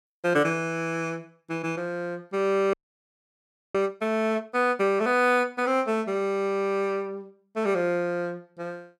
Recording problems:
frozen audio; at 2.5 s for 1 s

